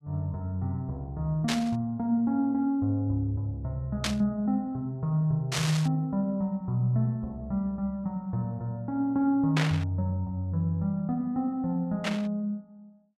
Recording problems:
burst of static; 5 times, first at 1.5 s; peak +3 dB vs average level

